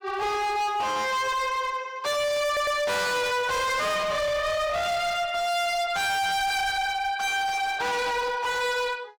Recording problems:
distorted audio; hard clipping, signal-to-distortion ratio 6 dB
audio stuttering; at 2.5 s

